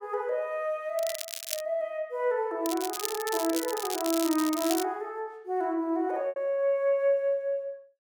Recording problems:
lost packets; 1% of the sound replaced, filled with repeated pitch periods
crackle; at 1 s and from 2.5 to 5 s; loose cable, SNR 6 dB

